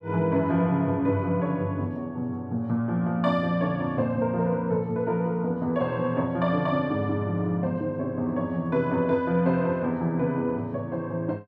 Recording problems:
none

